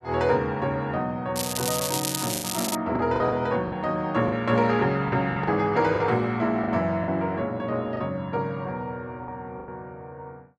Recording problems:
lost packets; 7% of the sound replaced, filled with the last packet
crackling; from 1.5 to 3 s; loose cable, SNR 3 dB

